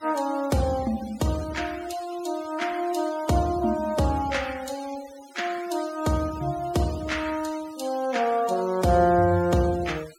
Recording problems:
noise reduction artefacts; signal-to-artefact ratio 18 dB

